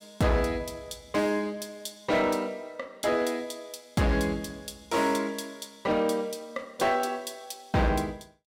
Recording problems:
distortion; hard clipping, uneven, signal-to-distortion ratio 11 dB

